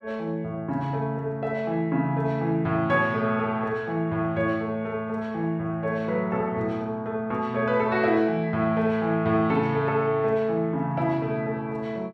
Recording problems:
none

